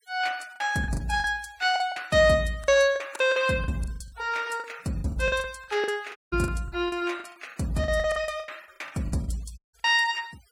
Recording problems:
denoising artefacts; signal-to-artefact ratio 25 dB
packet loss; 16% of the sound replaced, filled with the last packet
audio cutting out; at 6 s and at 9.5 s

